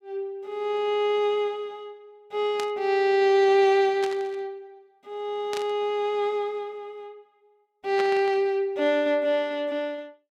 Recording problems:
static burst; 4 times, first at 2.5 s; peak -6 dB vs average level

